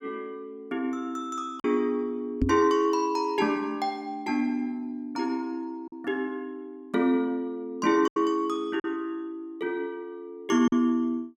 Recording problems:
packet loss; 2% of the sound replaced, filled with silence
knock on the microphone; at 2.5 s; peak +6 dB vs average level

